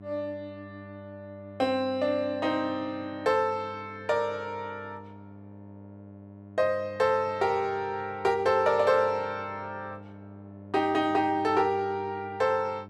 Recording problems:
hum; 50 Hz, harmonics up to 1 kHz, SNR 18 dB

